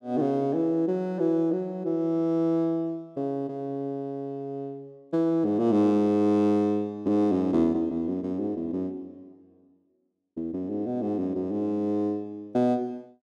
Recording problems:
none

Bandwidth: 12 kHz